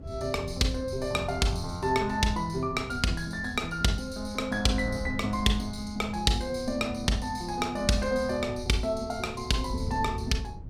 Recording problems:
wind on the microphone; below 130 Hz, SNR 11 dB

